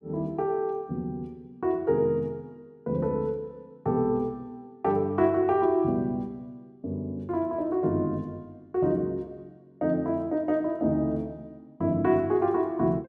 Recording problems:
none

